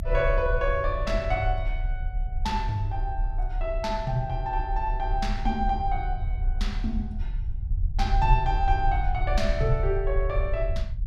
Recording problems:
rumble; below 56 Hz, strongest tone 32 Hz, SNR 2 dB

